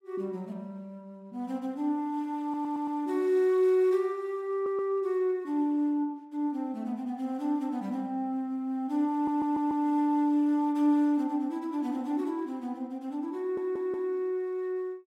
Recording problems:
audio stuttering; 4 times, first at 2.5 s

